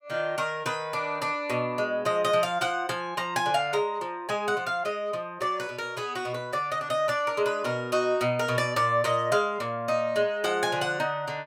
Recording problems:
none

